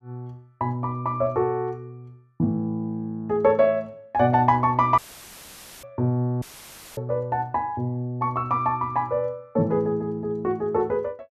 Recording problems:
dropout; at 5 s for 1 s and at 6.5 s for 0.5 s; filled with static

